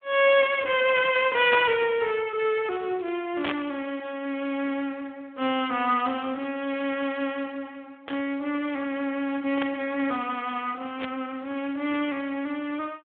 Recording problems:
telephone audio; 300 Hz to 3.6 kHz, Speex
static burst; 5 times, first at 1.5 s; peak +3 dB vs average level

